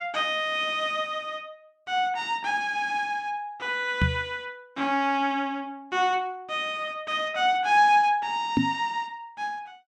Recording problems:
microphone bump; at 4 s and at 8.5 s; peak +6 dB vs average level

